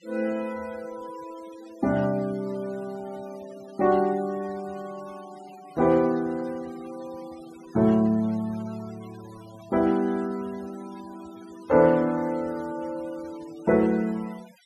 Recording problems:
noise reduction artefacts; signal-to-artefact ratio 24 dB

